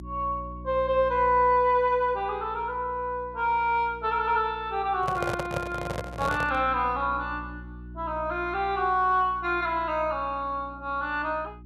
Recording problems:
electrical hum; 60 Hz, harmonics up to 360 Hz, SNR 17 dB
microphone handling noise; from 5 to 6.5 s; peak 0 dB vs average level

